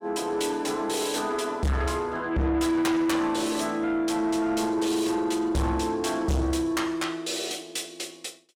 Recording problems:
distorted audio; soft clipping, signal-to-distortion ratio 8 dB

